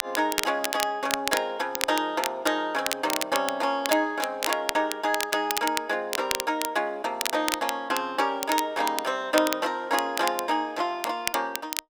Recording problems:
crackle; vinyl, SNR 5 dB

